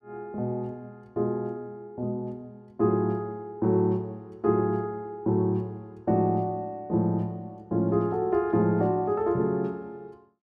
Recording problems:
none

